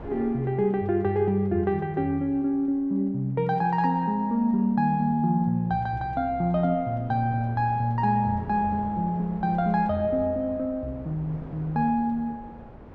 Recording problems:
wind on the microphone; below 540 Hz, SNR 20 dB

